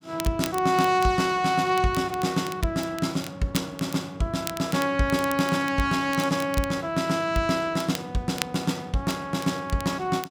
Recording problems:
crackle; vinyl, SNR 14 dB

